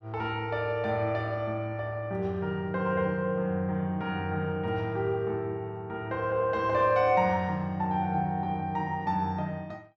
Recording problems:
none

